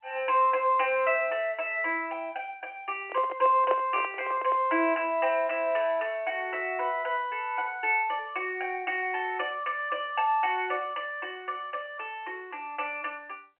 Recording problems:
telephone audio; 280 Hz to 3.1 kHz, G.711
microphone handling noise; from 3 to 4.5 s; peak +1 dB vs average level

